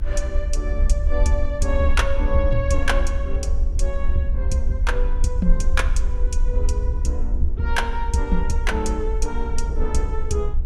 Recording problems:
rumble; below 60 Hz, SNR -2 dB
wind on the microphone; below 340 Hz, SNR 18 dB

